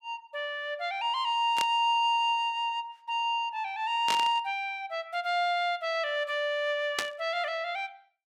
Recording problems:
static burst; at 1.5 s, at 4 s and at 7 s; peak +3 dB vs average level

